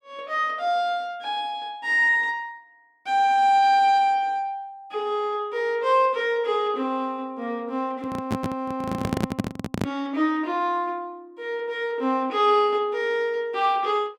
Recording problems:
microphone handling noise; from 8 to 10 s; peak +3 dB vs average level

